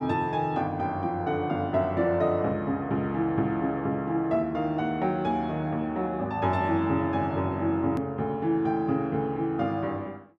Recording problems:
edit click; at 8 s

